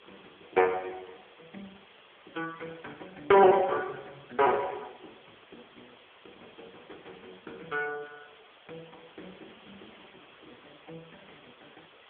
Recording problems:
telephone audio; 300 Hz to 3.8 kHz, AMR-NB
hiss; SNR 27 dB

